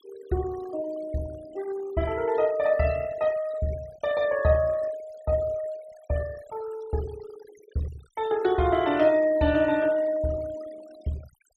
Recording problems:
denoising artefacts; signal-to-artefact ratio 19 dB

